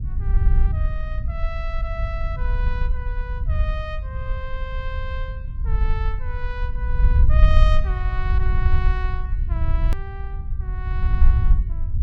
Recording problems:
low-frequency rumble; below 64 Hz, SNR -11 dB
click at an edit; at 10 s

